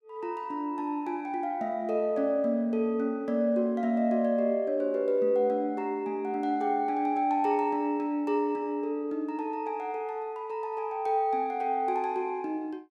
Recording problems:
none

